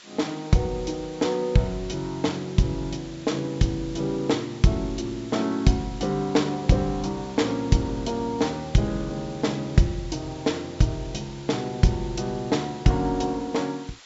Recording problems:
low-pass filter; nothing above 8 kHz
hiss; SNR 20 dB

